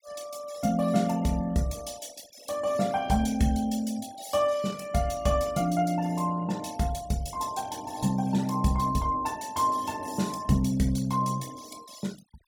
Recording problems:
denoising artefacts; signal-to-artefact ratio 20 dB

